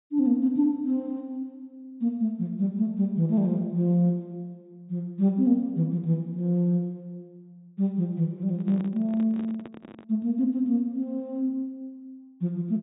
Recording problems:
low-pass filter; nothing above 4 kHz
microphone handling noise; from 8.5 to 10 s; peak -11 dB vs average level

